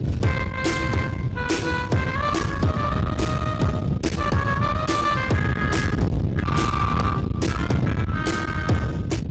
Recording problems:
lossy compression; Speex, log-spectral distance 3 dB, nothing above 7.8 kHz
distorted audio; soft clipping, signal-to-distortion ratio 6 dB
rumble; below 460 Hz, SNR 3 dB
wind noise; below 320 Hz, SNR 6 dB

